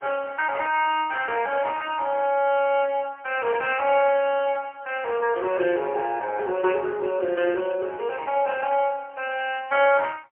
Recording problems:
phone line; 320 Hz to 3.1 kHz, AMR-NB, then MP3
static burst; at 3.5 s; peak -13 dB vs average level

